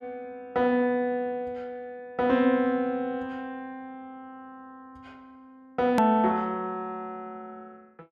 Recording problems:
hard cut with a click; at 6 s

